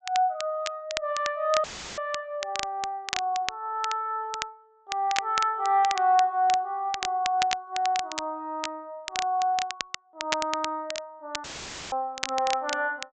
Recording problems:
low-pass filter; nothing above 8 kHz
crackle; vinyl, SNR 8 dB
dropout; at 1.5 s and at 11 s; filled with static

